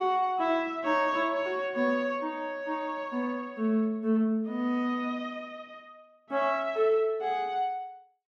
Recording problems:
none

